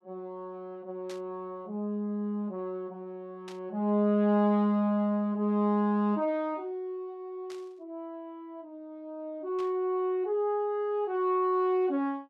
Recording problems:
burst of static; 4 times, first at 1 s; peak -13 dB vs average level

